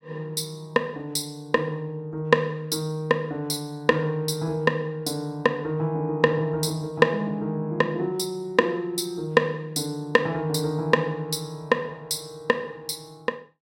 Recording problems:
none

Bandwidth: 16.5 kHz